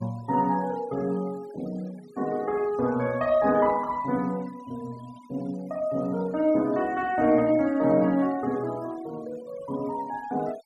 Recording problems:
noise reduction artefacts; signal-to-artefact ratio 24 dB

